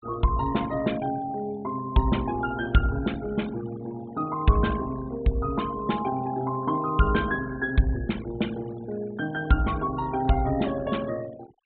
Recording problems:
treble cut off; nothing above 4 kHz
noise reduction artefacts; signal-to-artefact ratio 19 dB

